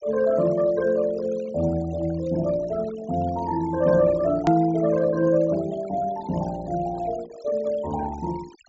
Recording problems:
low-pass filter; nothing above 8 kHz
denoising artefacts; signal-to-artefact ratio 20 dB
hard cut with a click; at 4.5 s

